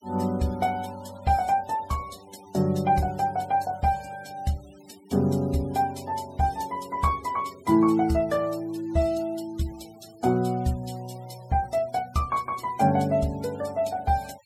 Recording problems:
noise reduction artefacts; signal-to-artefact ratio 22 dB

